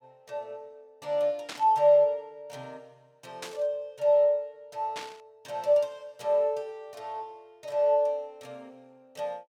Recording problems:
static burst; at 1.5 s, at 3.5 s and at 5 s; peak -7 dB vs average level

